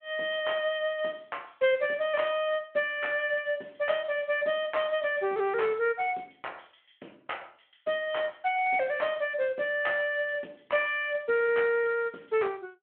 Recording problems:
telephone audio; 220 Hz to 3.3 kHz, Speex

